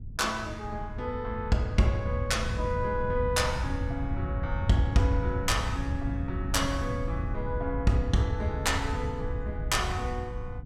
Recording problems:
wind noise; below 110 Hz, SNR 4 dB

